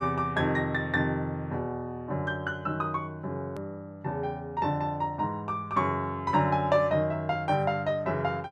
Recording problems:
edit click; at 3.5 s

